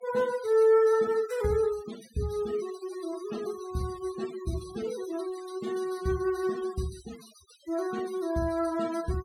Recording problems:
denoising artefacts; signal-to-artefact ratio 18 dB

